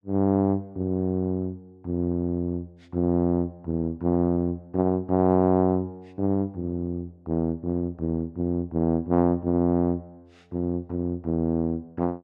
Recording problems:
none

